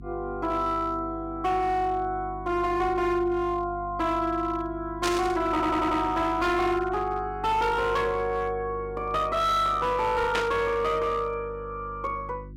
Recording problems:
distorted audio; hard clipping, signal-to-distortion ratio 11 dB
electrical hum; 50 Hz, harmonics up to 350 Hz, SNR 16 dB
burst of static; at 5 s and at 10 s; peak +1 dB vs average level
stutter; at 5.5 s

